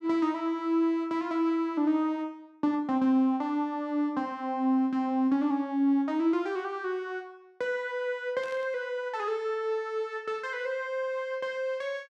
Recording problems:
burst of static; at 8.5 s; peak -16 dB vs average level

